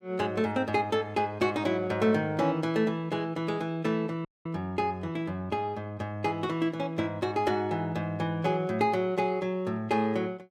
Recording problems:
audio cutting out; at 4.5 s

